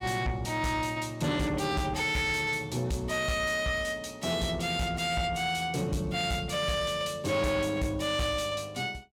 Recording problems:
distortion; soft clipping, signal-to-distortion ratio 10 dB

